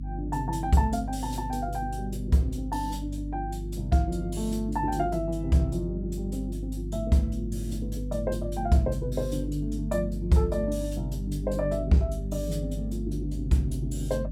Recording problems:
hum; 50 Hz, harmonics up to 300 Hz, SNR 6 dB

